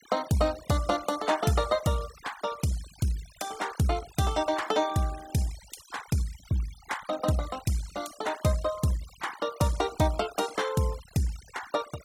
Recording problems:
noise reduction artefacts; signal-to-artefact ratio 16 dB

